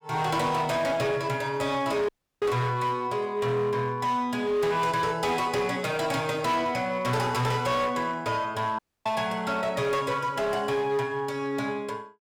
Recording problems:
distortion; hard clipping, signal-to-distortion ratio 11 dB
audio cutting out; at 2 s and at 9 s

